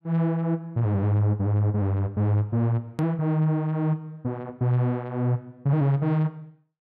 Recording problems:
click at an edit; at 3 s

